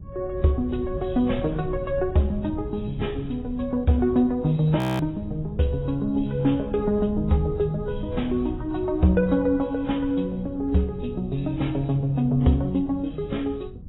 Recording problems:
lossy compression; AAC, log-spectral distance 2 dB
wind noise; below 140 Hz, SNR 12 dB
audio freezing; at 5 s

